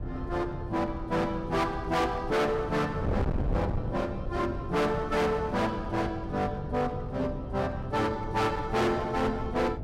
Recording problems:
distorted audio; hard clipping, uneven, signal-to-distortion ratio 6 dB
wind on the microphone; below 240 Hz, SNR 7 dB

